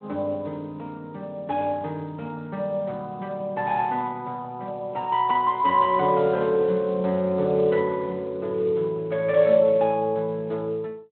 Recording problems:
phone line; 240 Hz to 3.9 kHz, Speex

